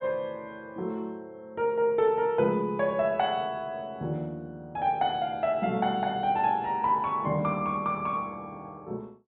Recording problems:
low-pass filter; nothing above 4 kHz

